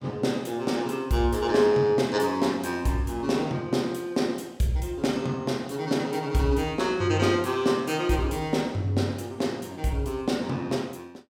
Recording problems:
none

